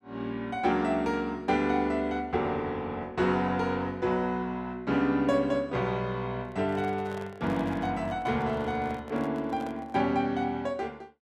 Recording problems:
microphone handling noise; from 6.5 to 10 s; peak -10 dB vs average level

